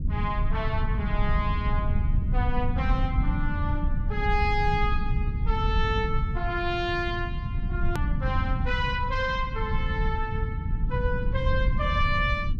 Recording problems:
rumble; below 100 Hz, SNR -1 dB
click at an edit; at 8 s

